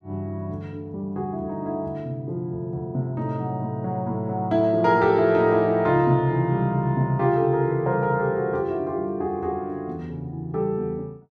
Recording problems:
none

